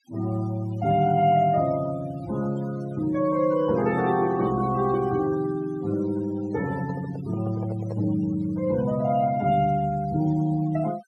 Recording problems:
noise reduction artefacts; signal-to-artefact ratio 19 dB
microphone handling noise; from 6.5 to 8 s; peak -8 dB vs average level

